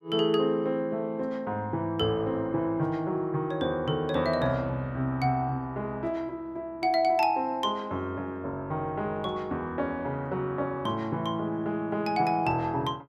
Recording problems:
none

